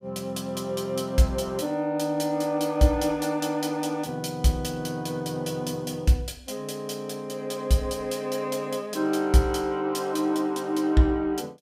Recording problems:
none

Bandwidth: 15.5 kHz